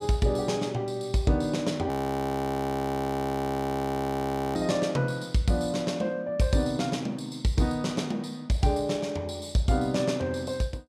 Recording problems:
audio freezing; at 2 s for 2.5 s

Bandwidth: 15.5 kHz